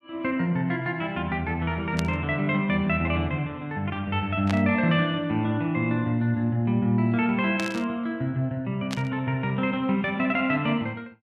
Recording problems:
static burst; 4 times, first at 2 s; peak -2 dB vs average level

